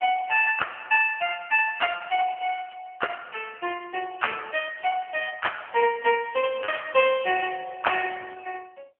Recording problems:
telephone audio; 300 Hz to 3.1 kHz, AMR-NB
packet loss; 2% of the sound replaced, filled with repeated pitch periods

